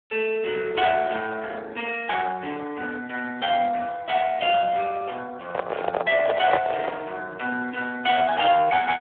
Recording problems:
telephone audio; 320 Hz to 3.3 kHz, Speex
microphone handling noise; from 5.5 to 7 s; peak +4 dB vs average level

